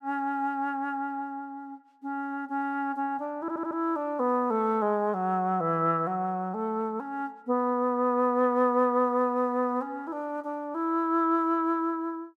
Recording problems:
stutter; at 3.5 s

